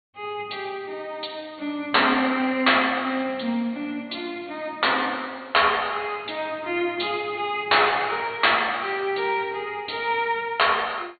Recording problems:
low-pass filter; nothing above 4.5 kHz

